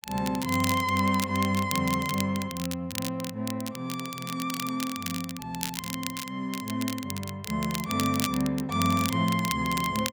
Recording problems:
crackling; vinyl, SNR 7 dB

